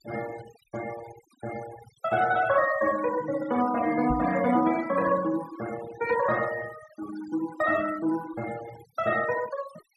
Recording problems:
denoising artefacts; signal-to-artefact ratio 14 dB
knock on the microphone; at 4 s; peak -3 dB vs average level

